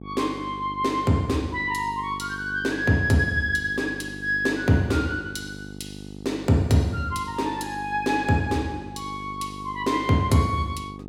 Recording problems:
hum; 50 Hz, harmonics up to 900 Hz, SNR 14 dB

